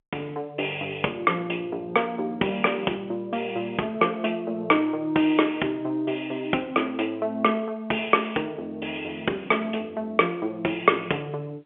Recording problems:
phone line; 240 Hz to 3.3 kHz, G.711

